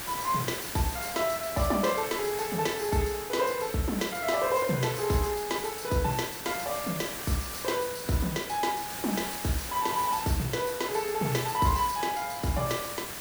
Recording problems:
hiss; slope -2 dB per octave, SNR 7 dB

